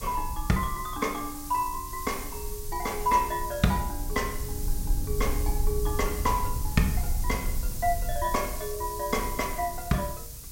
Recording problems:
hiss; SNR 9 dB
low-frequency rumble; below 66 Hz, SNR 6 dB

